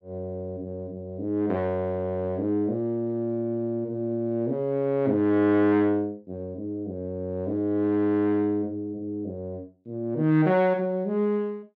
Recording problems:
none

